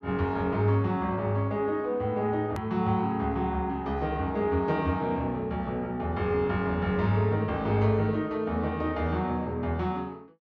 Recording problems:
edit click; at 2.5 s

